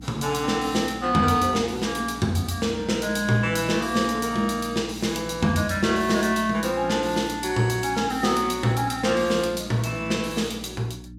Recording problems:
hum; 60 Hz, harmonics up to 300 Hz, SNR 18 dB

